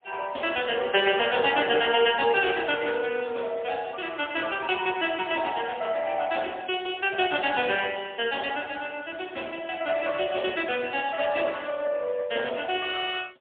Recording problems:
telephone audio; 300 Hz to 3.5 kHz, AMR-NB, then MP3

